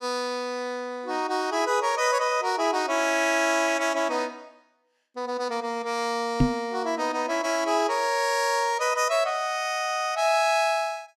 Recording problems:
knock on the microphone; at 6.5 s; peak +7 dB vs average level

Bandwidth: 14.5 kHz